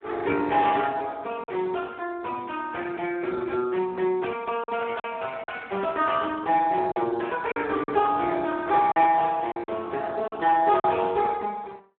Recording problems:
phone line; 240 Hz to 2.2 kHz, Speex
lost packets; 4% of the sound replaced, filled with silence

